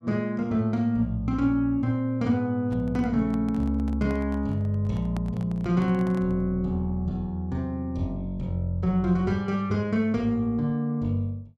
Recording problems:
handling noise; from 2.5 to 6.5 s; peak -9 dB vs average level

